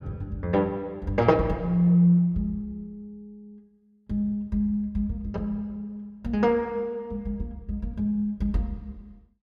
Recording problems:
none

